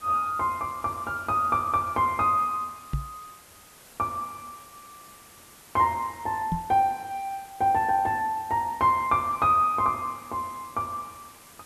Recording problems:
background hiss; slope -2 dB per octave, SNR 23 dB
microphone thump; at 3 s and at 6.5 s; peak 0 dB vs average level

